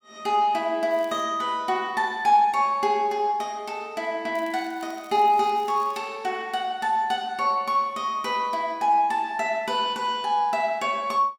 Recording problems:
crackling; at 1 s and from 4.5 to 6 s; loose cable, SNR 28 dB

